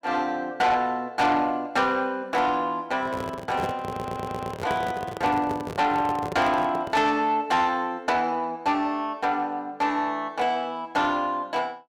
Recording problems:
distortion; soft clipping, signal-to-distortion ratio 11 dB
microphone handling noise; from 3 to 7 s; peak -1 dB vs average level
audio stuttering; at 4 s

